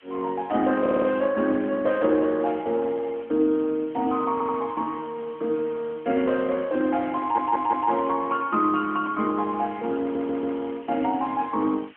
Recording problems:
phone line; 190 Hz to 3.2 kHz, AMR-NB
hiss; SNR 27 dB
audio stuttering; 4 times, first at 1 s

